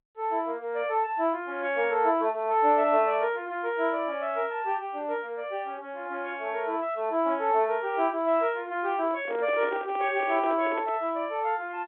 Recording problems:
phone line; 260 Hz to 3.5 kHz, G.711
handling noise; from 9 to 11 s; peak -6 dB vs average level

